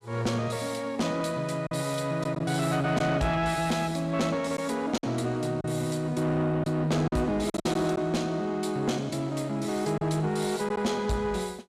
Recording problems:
distortion; soft clipping, signal-to-distortion ratio 11 dB
packet loss; 3% of the sound replaced, filled with silence

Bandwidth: 14.5 kHz